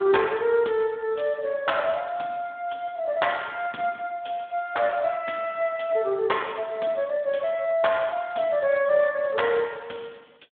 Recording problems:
phone line; 220 Hz to 3.6 kHz, Speex

